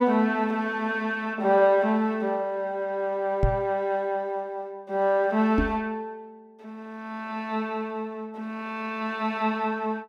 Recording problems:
knock on the microphone; at 3.5 s and at 5.5 s; peak +6 dB vs average level

